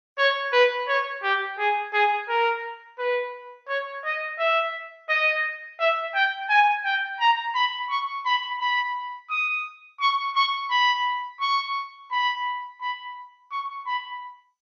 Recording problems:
lossy compression; MP2, log-spectral distance 2 dB

